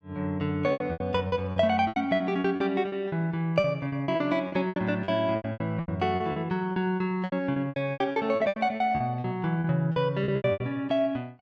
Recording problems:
packet loss; 18% of the sound replaced, filled with repeated pitch periods

